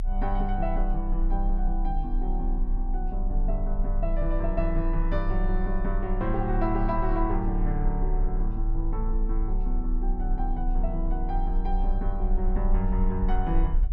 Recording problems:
low-frequency rumble; below 32 Hz, strongest tone 30 Hz, SNR -1 dB

